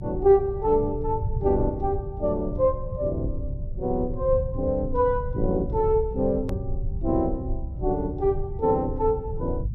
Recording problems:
low-frequency rumble; below 100 Hz, SNR 7 dB
click at an edit; at 6.5 s

